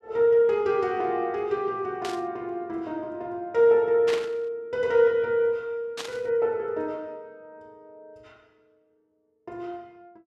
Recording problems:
static burst; at 2 s, at 4 s and at 6 s; peak -4 dB vs average level

